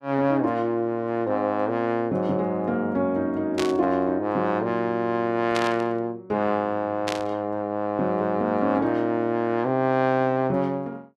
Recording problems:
burst of static; at 3.5 s, at 5.5 s and at 7 s; peak -1 dB vs average level

